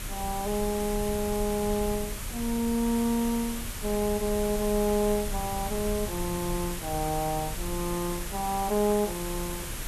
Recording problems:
hiss; slope -2 dB per octave, SNR 7 dB
low-frequency rumble; below 80 Hz, strongest tone 34 Hz, SNR 11 dB

